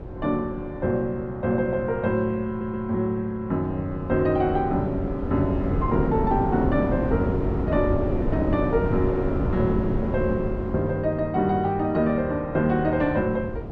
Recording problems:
wind noise; below 340 Hz, SNR 5 dB
stutter; at 2.5 s

